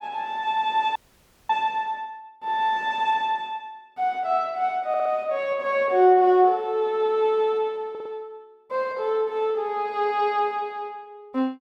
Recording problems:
frozen audio; at 1 s for 0.5 s
audio stuttering; at 5 s and at 8 s

